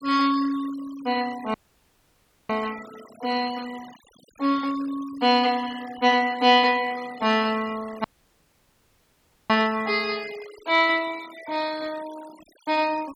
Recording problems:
denoising artefacts; signal-to-artefact ratio 20 dB
audio cutting out; at 1.5 s for 1 s and at 8 s for 1.5 s

